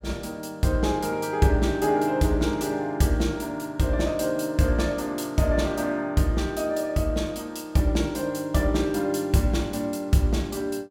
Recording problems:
none

